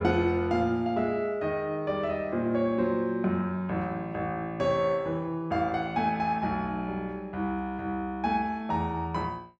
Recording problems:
none

